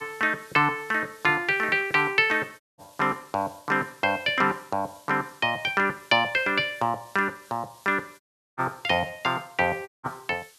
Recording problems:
background hiss; slope +2 dB per octave, SNR 27 dB
dropout; at 2.5 s, at 8 s and at 10 s

